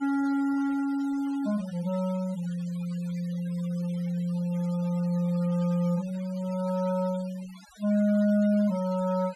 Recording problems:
noise reduction artefacts; signal-to-artefact ratio 23 dB

